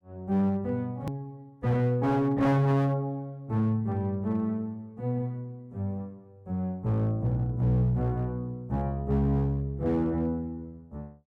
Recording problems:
distortion; hard clipping, uneven, signal-to-distortion ratio 12 dB
hard cut with a click; at 1 s

